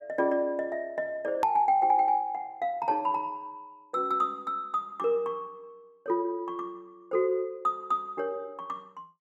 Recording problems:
hard cut with a click; at 1.5 s

